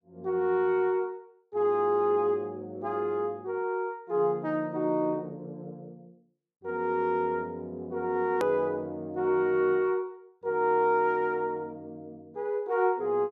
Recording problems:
click at an edit; at 8.5 s

